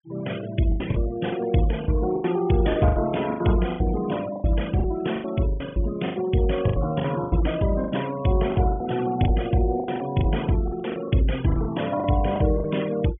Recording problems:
low-pass filter; nothing above 3.4 kHz
noise reduction artefacts; signal-to-artefact ratio 17 dB
packet loss; 15% of the sound replaced, filled with the last packet

